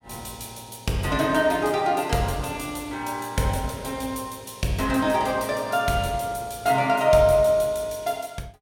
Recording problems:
none

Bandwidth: 16.5 kHz